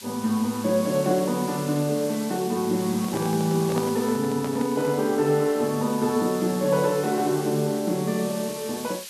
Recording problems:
background hiss; slope +3 dB per octave, SNR 13 dB
microphone handling noise; from 3 to 5 s; peak -2 dB vs average level

